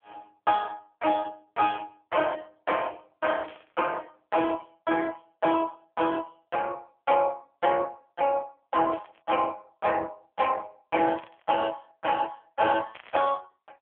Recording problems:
telephone audio; 260 Hz to 3.3 kHz, AMR-NB
static burst; 5 times, first at 3.5 s; peak -14 dB vs average level

